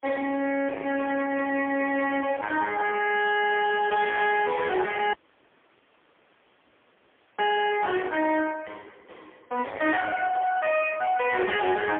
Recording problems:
phone line; 170 Hz to 3.4 kHz, AMR-NB, then MP3
distortion; soft clipping, signal-to-distortion ratio 10 dB
dropout; at 5 s for 2.5 s

